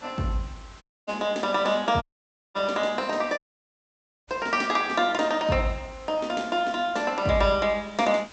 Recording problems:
low-pass filter; nothing above 8 kHz
hiss; slope -2 dB per octave, SNR 23 dB
dropout; at 1 s, at 2 s for 0.5 s and at 3.5 s for 1 s

